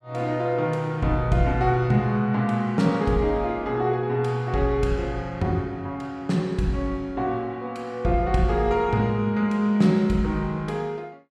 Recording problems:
none

